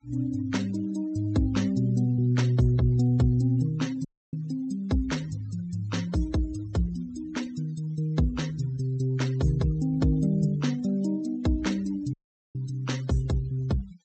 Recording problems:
treble missing; nothing above 8 kHz
noise reduction artefacts; signal-to-artefact ratio 22 dB
dropout; at 4 s and at 12 s

